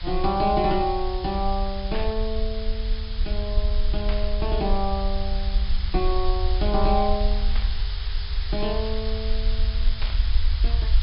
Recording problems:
treble missing; nothing above 5.5 kHz
background hiss; SNR 10 dB
rumble; below 56 Hz, SNR 1 dB
static burst; 4 times, first at 2 s; peak -4 dB vs average level

